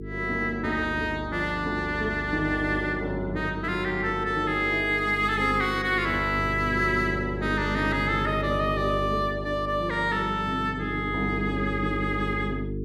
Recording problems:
electrical hum; 50 Hz, harmonics up to 450 Hz, SNR 8 dB

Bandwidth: 14.5 kHz